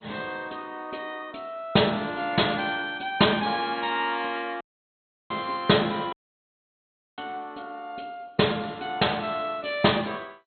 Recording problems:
lossy compression; MP2, log-spectral distance 6 dB, nothing above 4.2 kHz
audio cutting out; at 4.5 s for 0.5 s and at 6 s for 1 s

